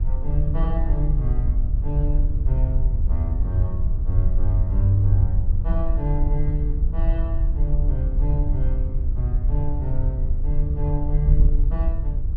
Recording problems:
treble cut off; nothing above 6.3 kHz
wind on the microphone; below 62 Hz, SNR -4 dB

